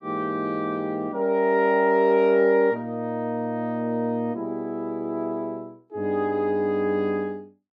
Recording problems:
none

